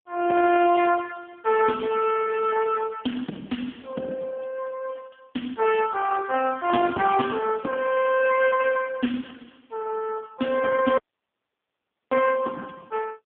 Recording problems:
telephone audio; 190 Hz to 2.8 kHz, AMR-NB
dropout; at 11 s for 1 s

